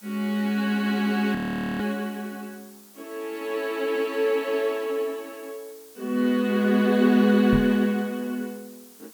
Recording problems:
hiss; SNR 24 dB
frozen audio; at 1.5 s
microphone thump; at 7.5 s; peak +1 dB vs average level

